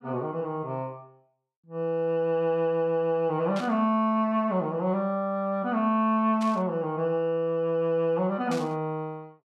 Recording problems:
burst of static; at 3.5 s, at 6.5 s and at 8.5 s; peak -9 dB vs average level

